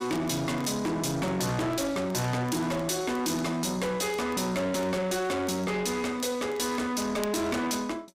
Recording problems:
distorted audio; soft clipping, signal-to-distortion ratio 7 dB
crackle; vinyl, SNR 24 dB

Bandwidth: 15.5 kHz